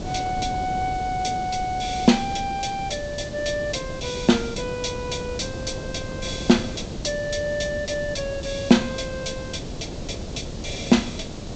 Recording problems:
treble cut off; nothing above 8 kHz
hiss; slope +1 dB per octave, SNR 18 dB
wind on the microphone; below 400 Hz, SNR 9 dB

